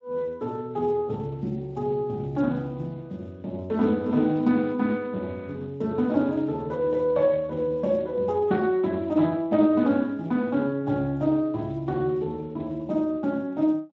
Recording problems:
lossy compression; Speex, log-spectral distance 2 dB

